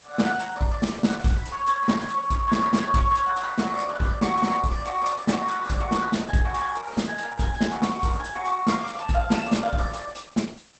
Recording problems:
lossy compression; Opus, log-spectral distance 7 dB, nothing above 8.2 kHz
background hiss; slope -1 dB per octave, SNR 27 dB

